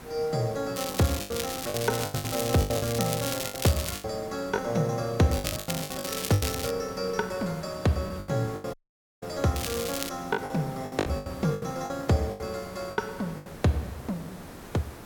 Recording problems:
background hiss; slope -6 dB per octave, SNR 14 dB
wind on the microphone; below 990 Hz, SNR 23 dB
lost packets; 12% of the sound replaced, filled with the last packet
crackle; from 1 to 4 s, from 5.5 to 6.5 s and at 9.5 s; loose cable, SNR 4 dB
dropout; at 8.5 s

